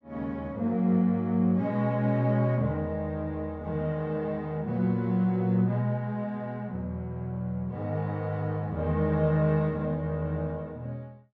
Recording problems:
none

